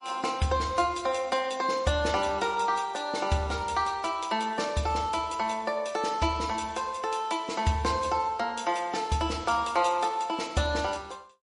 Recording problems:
lossy codec; MP3, log-spectral distance 3 dB, nothing above 10.4 kHz

